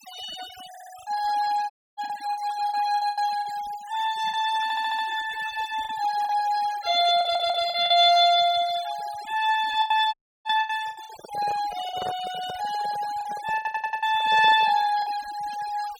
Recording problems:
denoising artefacts; signal-to-artefact ratio 18 dB
lost packets; 8% of the sound replaced, filled with the last packet
stutter; 4 times, first at 0.5 s
audio cutting out; at 1.5 s and at 10 s
handling noise; from 11 to 15 s; peak -7 dB vs average level

